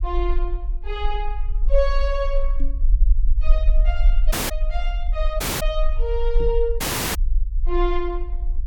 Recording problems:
low-frequency rumble; below 42 Hz, strongest tone 20 Hz, SNR -3 dB
microphone thump; at 2.5 s and at 6.5 s; peak -2 dB vs average level
audio cutting out; at 4.5 s, at 5.5 s and at 7 s

